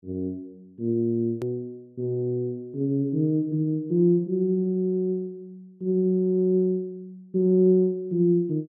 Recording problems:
hard cut with a click; at 1.5 s

